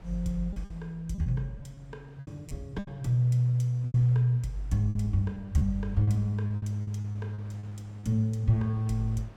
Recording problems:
wind on the microphone; below 720 Hz, SNR 26 dB
packet loss; 12% of the sound replaced, filled with repeated pitch periods

